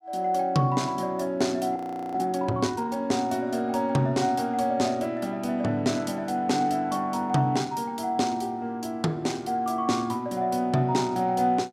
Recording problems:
frozen audio; at 2 s

